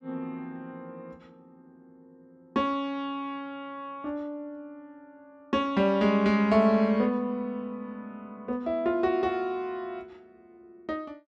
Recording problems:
none

